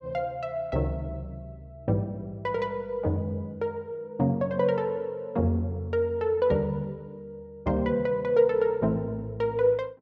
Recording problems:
none

